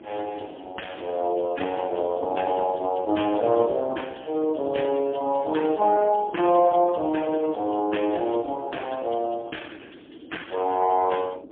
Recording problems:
phone line; 240 Hz to 3.4 kHz, AMR-NB, then MP3
wind on the microphone; below 420 Hz, SNR 18 dB

